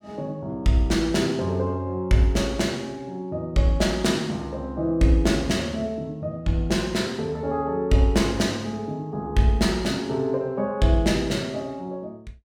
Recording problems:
none

